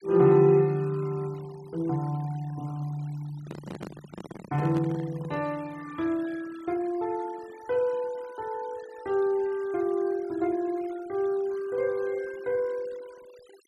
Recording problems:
noise reduction artefacts; signal-to-artefact ratio 24 dB
handling noise; from 3.5 to 5.5 s; peak -4 dB vs average level

